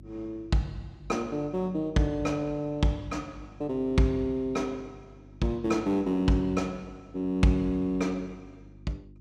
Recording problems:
hum; 50 Hz, harmonics up to 350 Hz, SNR 22 dB

